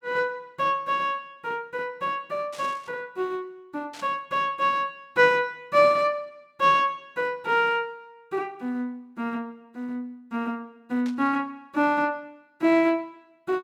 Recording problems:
burst of static; at 2.5 s, at 4 s and at 11 s; peak -13 dB vs average level

